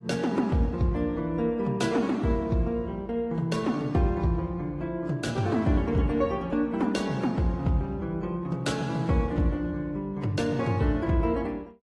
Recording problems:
codec artefacts; AAC, then AAC, log-spectral distance 2 dB, nothing above 11 kHz

